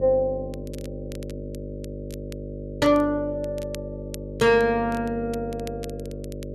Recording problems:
electrical hum; 50 Hz, harmonics up to 600 Hz, SNR 11 dB
crackle; vinyl, SNR 24 dB

